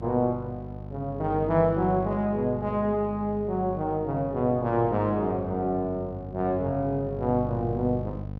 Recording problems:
hum; 50 Hz, harmonics up to 800 Hz, SNR 11 dB

